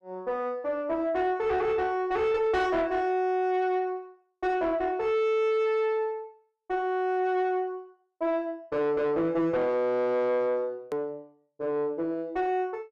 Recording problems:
distortion; soft clipping, signal-to-distortion ratio 11 dB
hard cut with a click; at 11 s

